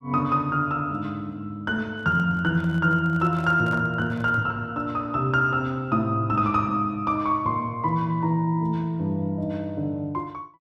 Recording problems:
microphone handling noise; from 2 to 4.5 s; peak -11 dB vs average level

